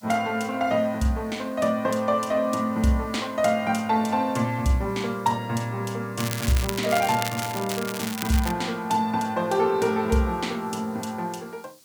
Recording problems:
hiss; SNR 27 dB
crackling; from 6 to 8.5 s; loose cable, SNR 8 dB

